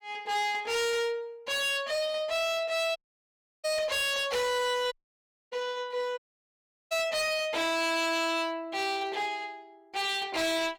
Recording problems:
distorted audio; hard clipping, signal-to-distortion ratio 7 dB
audio cutting out; at 3 s for 0.5 s, at 5 s for 0.5 s and at 6 s for 0.5 s

